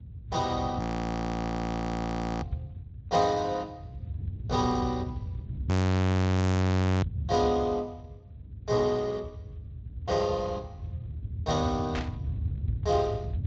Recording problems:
lossy codec; Speex, log-spectral distance 2 dB
rumble; below 280 Hz, strongest tone 94 Hz, SNR 2 dB
frozen audio; at 1 s for 1.5 s and at 5.5 s for 1.5 s
static burst; at 12 s; peak -2 dB vs average level

